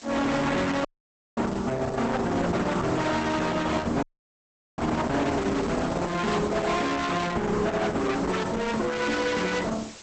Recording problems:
codec artefacts; Opus, log-spectral distance 8 dB, nothing above 8 kHz
distortion; hard clipping, signal-to-distortion ratio 6 dB
background hiss; slope 0 dB per octave, SNR 17 dB
dropout; at 1 s for 0.5 s and at 4 s for 1 s
handling noise; from 5 to 7 s; peak -7 dB vs average level

